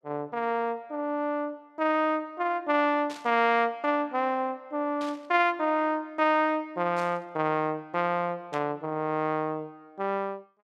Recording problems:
static burst; 4 times, first at 3 s; peak -11 dB vs average level

